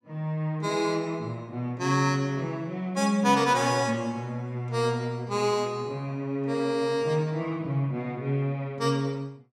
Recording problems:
none

